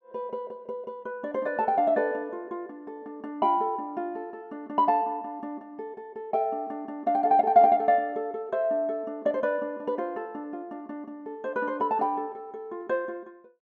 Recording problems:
none

